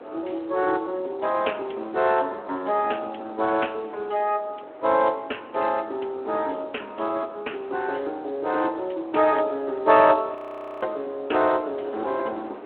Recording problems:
phone line; 280 Hz to 3.5 kHz, Speex
wind noise; below 830 Hz, SNR 18 dB
frozen audio; at 10 s

